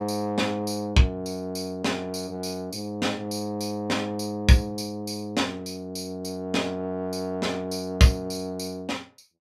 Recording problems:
none

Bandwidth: 15.5 kHz